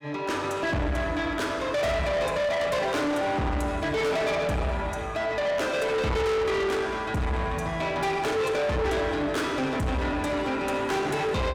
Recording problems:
distorted audio; soft clipping, signal-to-distortion ratio 6 dB

